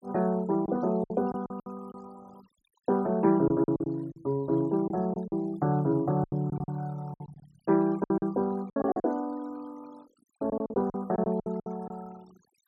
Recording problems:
noise reduction artefacts; signal-to-artefact ratio 26 dB
lost packets; 12% of the sound replaced, filled with silence

